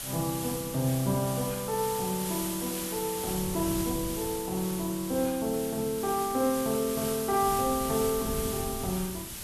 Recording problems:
hiss; slope +1 dB per octave, SNR 6 dB
wind on the microphone; below 200 Hz, SNR 15 dB

